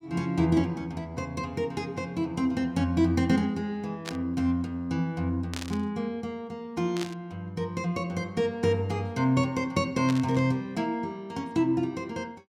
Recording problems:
static burst; 4 times, first at 4 s; peak -2 dB vs average level

